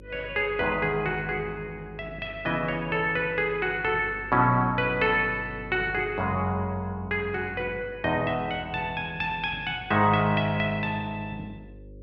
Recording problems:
electrical hum; 50 Hz, harmonics up to 550 Hz, SNR 20 dB

